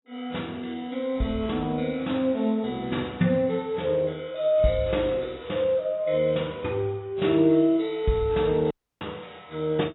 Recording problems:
lossy compression; AAC, log-spectral distance 4 dB, nothing above 3.9 kHz
dropout; at 8.5 s

